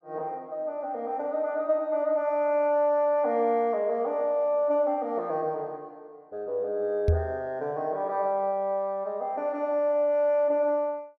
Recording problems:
microphone bump; at 7 s; peak +6 dB vs average level

